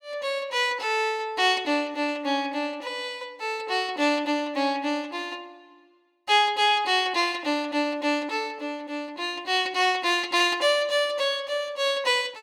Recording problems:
none

